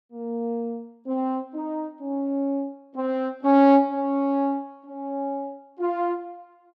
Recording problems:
none

